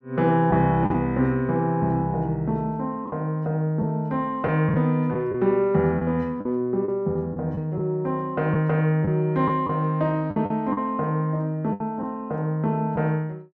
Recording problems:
packet loss; 4% of the sound replaced, filled with the last packet

